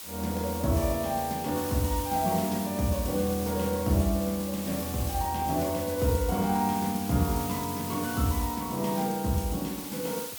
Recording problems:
background hiss; slope +1 dB per octave, SNR 8 dB

